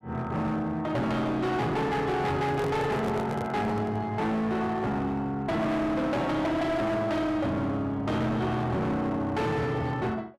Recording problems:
distortion; hard clipping, uneven, signal-to-distortion ratio 7 dB
handling noise; from 2.5 to 4 s; peak -1 dB vs average level

